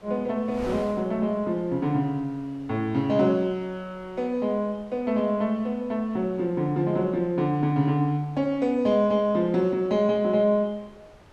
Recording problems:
wind noise; below 1.3 kHz, SNR 24 dB

